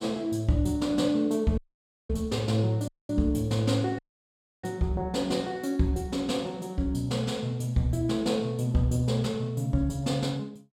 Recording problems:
audio cutting out; at 1.5 s for 0.5 s, at 3 s and at 4 s for 0.5 s

